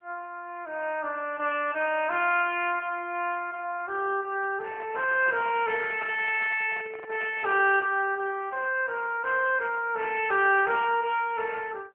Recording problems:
phone line; 320 Hz to 3.1 kHz, AMR-NB
microphone handling noise; from 4.5 to 8 s; peak -8 dB vs average level

